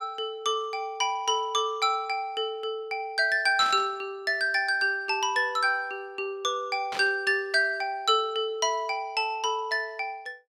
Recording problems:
static burst; at 3.5 s and at 7 s; peak -5 dB vs average level

